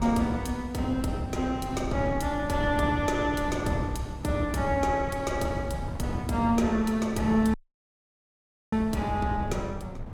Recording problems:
wind on the microphone; below 210 Hz, SNR 9 dB
audio cutting out; at 7.5 s for 1 s

